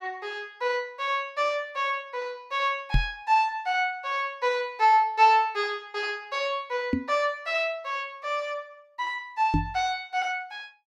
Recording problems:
microphone thump; at 3 s, at 7 s and at 9.5 s; peak +5 dB vs average level

